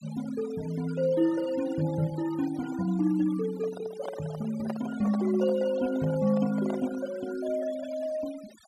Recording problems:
denoising artefacts; signal-to-artefact ratio 17 dB
microphone handling noise; from 3.5 to 7 s; peak -4 dB vs average level

